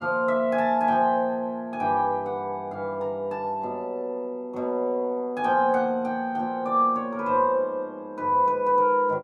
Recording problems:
none

